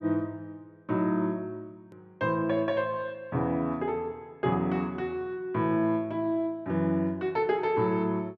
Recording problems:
hard cut with a click; at 2 s

